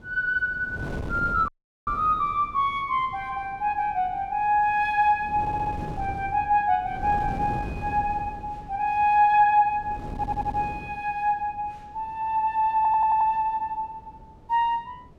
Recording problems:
wind on the microphone; below 340 Hz, SNR 14 dB
audio cutting out; at 1.5 s
audio stuttering; at 5.5 s, at 10 s and at 13 s

